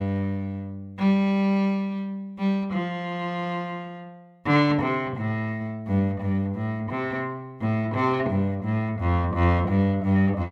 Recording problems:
none

